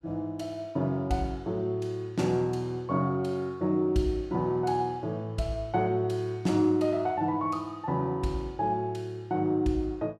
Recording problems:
none

